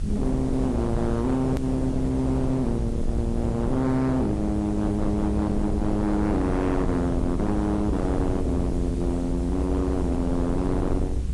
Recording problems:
lossy compression; AAC, log-spectral distance 2 dB, nothing above 13.1 kHz
distorted audio; hard clipping, signal-to-distortion ratio 7 dB
hum; 50 Hz, harmonics up to 350 Hz, SNR 23 dB
background hiss; slope -2 dB per octave, SNR 24 dB
low-frequency rumble; below 150 Hz, SNR 4 dB
click at an edit; at 1.5 s

